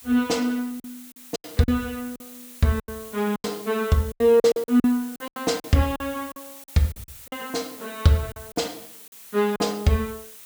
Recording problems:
background hiss; slope +2 dB per octave, SNR 17 dB
packet loss; 13% of the sound replaced, filled with silence

